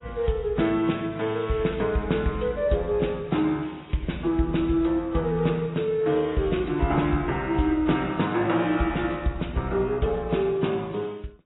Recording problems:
lossy codec; AAC, log-spectral distance 4 dB, nothing above 3.8 kHz

